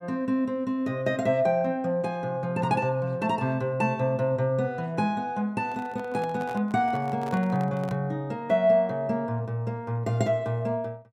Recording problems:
handling noise; from 5.5 to 8 s; peak -10 dB vs average level

